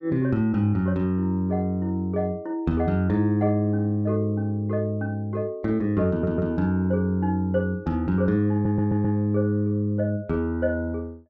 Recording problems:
stutter; at 6 s and at 8.5 s

